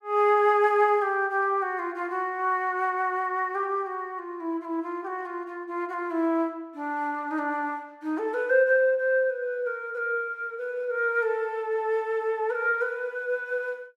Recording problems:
none

